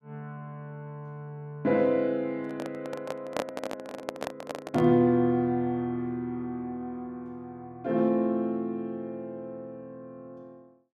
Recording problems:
handling noise; from 2.5 to 5 s; peak +2 dB vs average level

